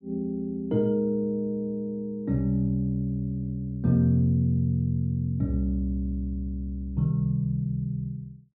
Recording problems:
treble missing; nothing above 4.7 kHz

